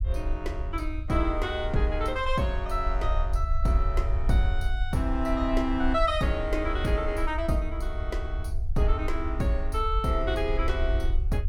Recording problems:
low-frequency rumble; below 60 Hz, SNR 2 dB

